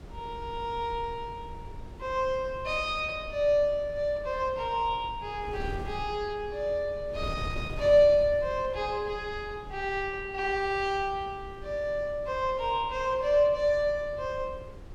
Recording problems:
wind on the microphone; below 170 Hz, SNR 15 dB

